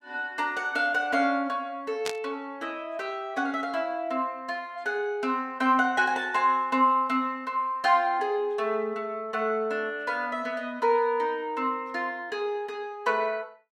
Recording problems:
burst of static; at 2 s; peak -1 dB vs average level

